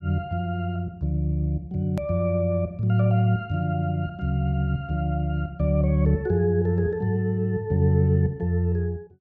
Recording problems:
edit click; at 2 s

